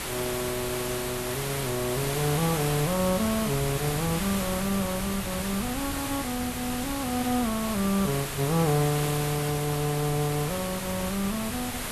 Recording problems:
hiss; slope -2 dB per octave, SNR 4 dB
wind noise; below 170 Hz, SNR 13 dB

